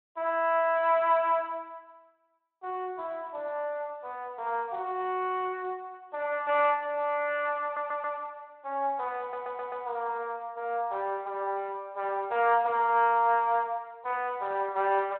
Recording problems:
telephone audio; 320 Hz to 3.2 kHz, Speex
stutter; at 7.5 s and at 9 s

